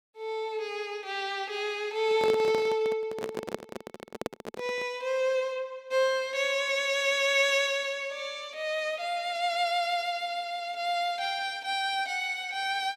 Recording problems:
microphone handling noise; from 2 to 5 s; peak -1 dB vs average level

